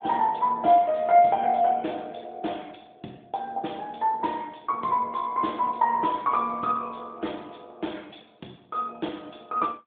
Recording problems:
telephone audio; 190 Hz to 3.6 kHz, AMR-NB

